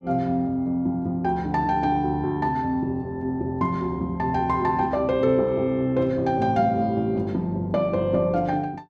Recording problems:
none

